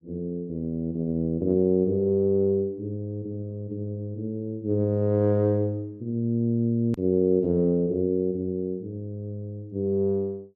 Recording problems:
click at an edit; at 7 s

